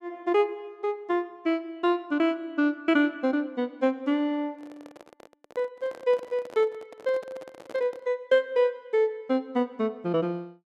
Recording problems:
handling noise; from 4.5 to 8 s; peak -11 dB vs average level

